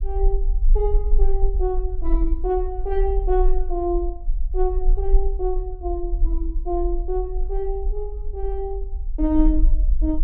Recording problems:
rumble; below 40 Hz, strongest tone 22 Hz, SNR -1 dB

